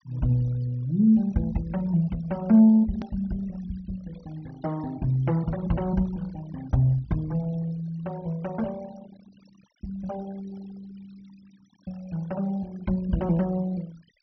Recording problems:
treble missing; nothing above 5.9 kHz
noise reduction artefacts; signal-to-artefact ratio 24 dB
edit click; at 3 s

